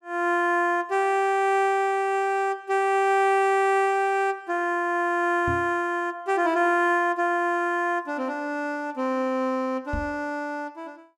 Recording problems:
knock on the microphone; at 5.5 s and at 10 s; peak -4 dB vs average level

